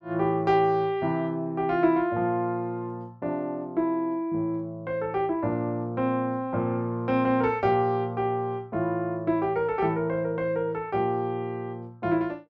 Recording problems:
none

